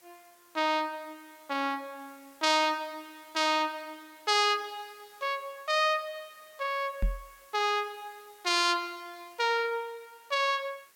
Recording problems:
hiss; slope -1 dB per octave, SNR 28 dB
microphone bump; at 7 s; peak +2 dB vs average level

